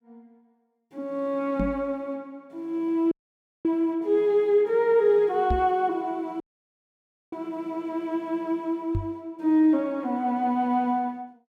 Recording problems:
microphone bump; at 1.5 s, at 5.5 s and at 9 s; peak +1 dB vs average level
dropout; at 3 s for 0.5 s and at 6.5 s for 1 s

